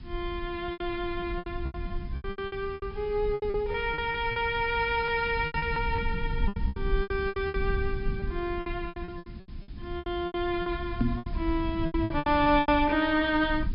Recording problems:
treble missing; nothing above 5.5 kHz
hiss; SNR 28 dB
rumble; below 90 Hz, SNR 8 dB
packet loss; 17% of the sound replaced, filled with repeated pitch periods
microphone thump; at 11 s; peak +6 dB vs average level

